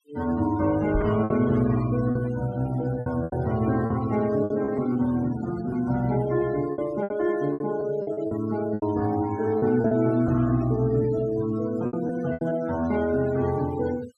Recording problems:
noise reduction artefacts; signal-to-artefact ratio 16 dB
packet loss; 8% of the sound replaced, filled with repeated pitch periods
microphone bump; at 1 s; peak 0 dB vs average level

